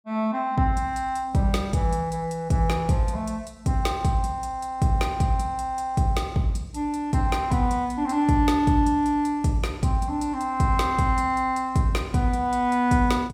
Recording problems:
none

